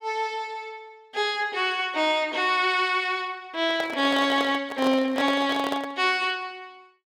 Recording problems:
handling noise; from 3.5 to 6 s; peak -2 dB vs average level

